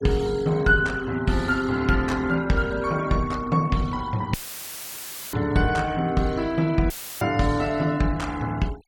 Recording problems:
denoising artefacts; signal-to-artefact ratio 22 dB
dropout; at 4.5 s for 1 s and at 7 s; filled with static

